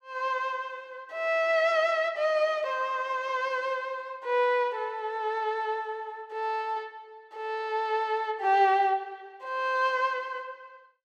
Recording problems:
none

